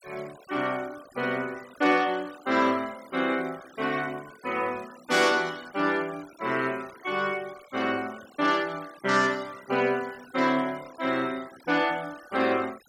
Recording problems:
noise reduction artefacts; signal-to-artefact ratio 21 dB

